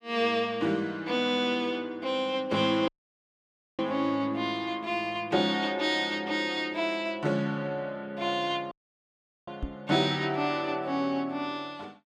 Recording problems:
dropout; at 3 s for 1 s and at 8.5 s for 1 s
microphone bump; at 9.5 s; peak -2 dB vs average level

